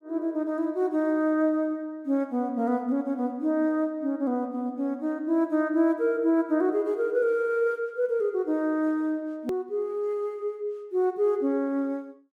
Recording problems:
click at an edit; at 9.5 s

